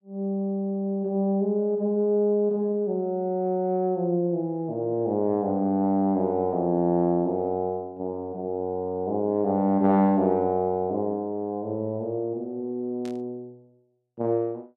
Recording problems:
burst of static; at 13 s; peak -16 dB vs average level

